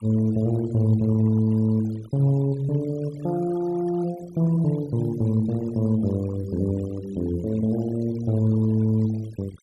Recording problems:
noise reduction artefacts; signal-to-artefact ratio 22 dB

